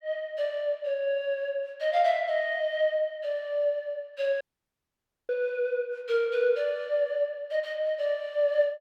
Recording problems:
dropout; at 4.5 s for 1 s

